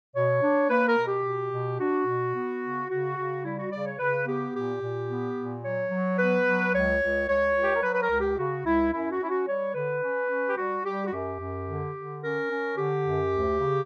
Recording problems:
none

